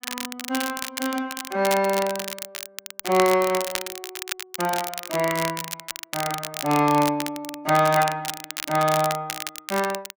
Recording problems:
crackle; vinyl, SNR 8 dB

